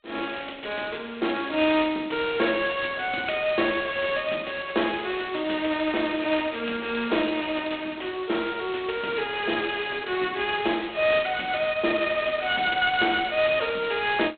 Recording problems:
telephone audio; 260 Hz to 3.7 kHz, G.726

